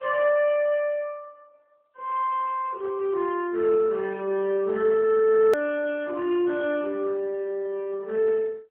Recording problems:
telephone audio; 240 Hz to 3.5 kHz, AMR-NB
hard cut with a click; at 5.5 s

